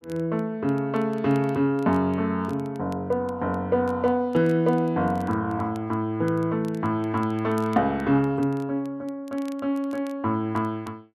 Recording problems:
crackle; vinyl, SNR 30 dB

